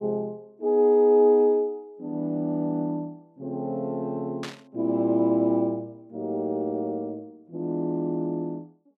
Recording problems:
static burst; at 4.5 s; peak -7 dB vs average level

